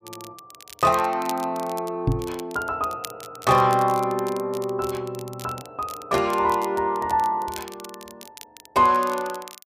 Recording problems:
crackle; vinyl, SNR 18 dB
knock on the microphone; at 2 s; peak +5 dB vs average level

